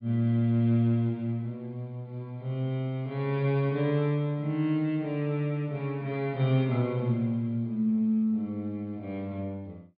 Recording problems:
low-pass filter; nothing above 4.9 kHz

